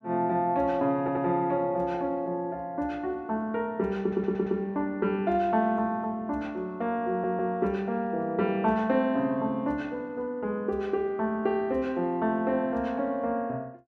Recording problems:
audio stuttering; at 1 s, at 4 s and at 7 s

